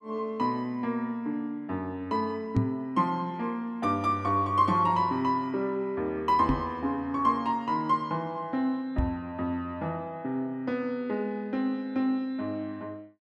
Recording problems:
knock on the microphone; at 2.5 s, at 6.5 s and at 9 s; peak +7 dB vs average level

